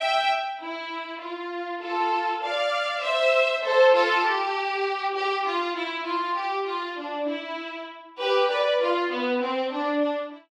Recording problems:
none

